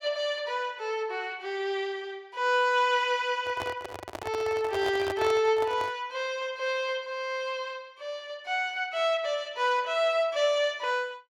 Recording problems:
handling noise; from 3.5 to 6 s; peak -2 dB vs average level

